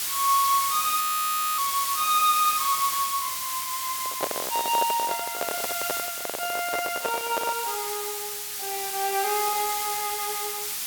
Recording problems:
background hiss; slope +3 dB per octave, SNR 1 dB
audio freezing; at 1 s for 0.5 s
microphone handling noise; from 4 to 7.5 s; peak +3 dB vs average level

